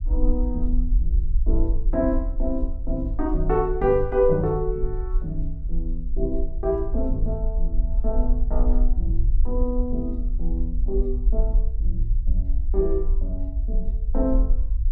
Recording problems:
rumble; below 46 Hz, SNR -1 dB

